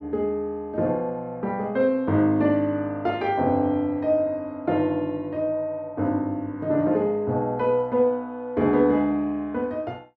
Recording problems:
none

